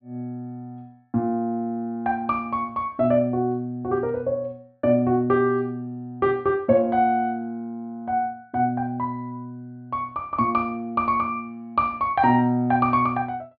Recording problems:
low-pass filter; nothing above 4.7 kHz

